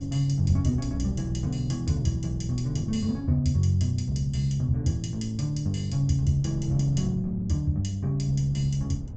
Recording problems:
treble missing; nothing above 8 kHz
wind on the microphone; below 140 Hz, SNR 14 dB

